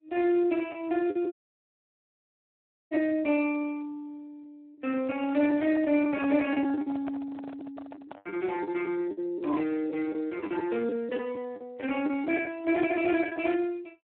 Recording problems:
phone line; 240 Hz to 3.1 kHz, Speex
lost packets; 7% of the sound replaced, filled with the last packet
dropout; at 1.5 s for 1.5 s
microphone handling noise; from 5 to 8.5 s; peak -6 dB vs average level

